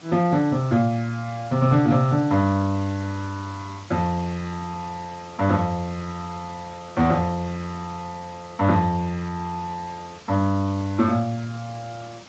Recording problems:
codec artefacts; Speex, then MP3, log-spectral distance 5 dB, nothing above 6.2 kHz
background hiss; slope -2 dB per octave, SNR 21 dB

